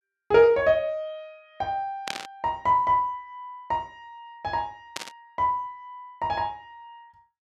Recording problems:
burst of static; at 2 s and at 5 s; peak -1 dB vs average level

